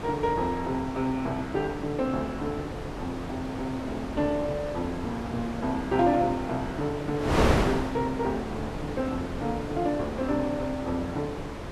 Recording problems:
wind on the microphone; below 900 Hz, SNR 4 dB

